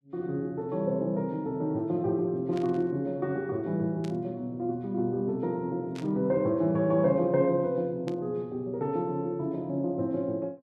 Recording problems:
static burst; 4 times, first at 2.5 s; peak -12 dB vs average level

